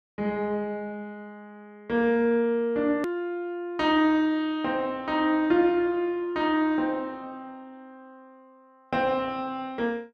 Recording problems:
click at an edit; at 3 s

